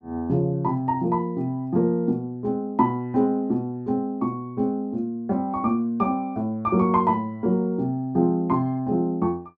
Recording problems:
none

